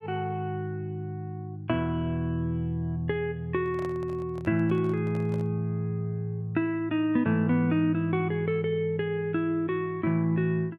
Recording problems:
microphone handling noise; from 3.5 to 5.5 s; peak -11 dB vs average level

